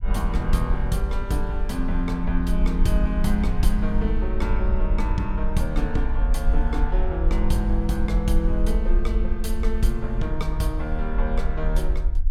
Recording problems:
low-frequency rumble; below 48 Hz, SNR -1 dB

